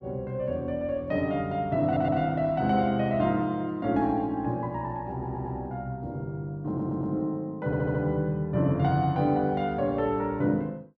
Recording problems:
audio stuttering; 4 times, first at 2 s

